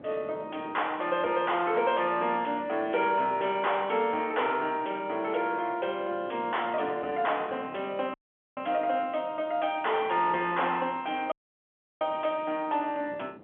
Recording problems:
phone line; 260 Hz to 3.3 kHz, G.711
distorted audio; soft clipping, signal-to-distortion ratio 12 dB
wind noise; below 700 Hz, SNR 20 dB
dropout; at 8 s and at 11 s for 0.5 s

